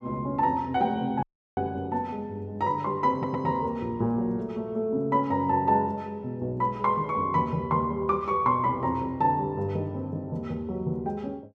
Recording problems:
dropout; at 1 s
audio stuttering; at 3 s

